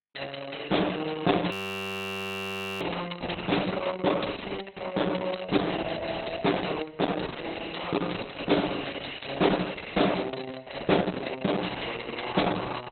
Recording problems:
lossy compression; Opus, log-spectral distance 8 dB, nothing above 17.7 kHz
frozen audio; at 1.5 s for 1.5 s

